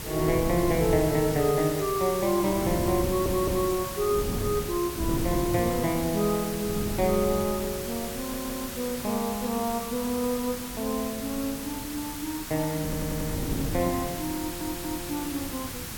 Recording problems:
background hiss; slope +1 dB per octave, SNR 8 dB
wind noise; below 270 Hz, SNR 8 dB
stutter; 4 times, first at 3 s

